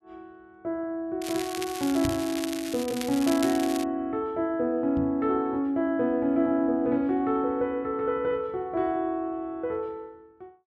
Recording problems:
crackling; from 1 to 4 s; loose cable, SNR 10 dB
microphone thump; at 2 s and at 5 s; peak -2 dB vs average level

